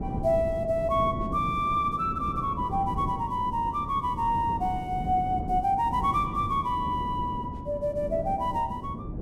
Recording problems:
wind noise; below 270 Hz, SNR 8 dB

